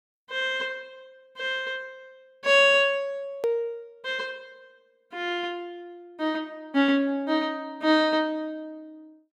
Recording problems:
hard cut with a click; at 3.5 s

